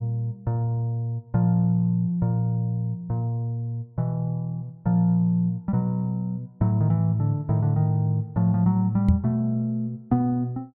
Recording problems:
knock on the microphone; at 9 s; peak +7 dB vs average level

